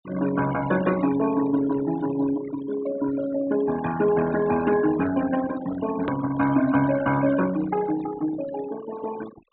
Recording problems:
treble cut off; nothing above 4 kHz
denoising artefacts; signal-to-artefact ratio 13 dB
click at an edit; at 6 s

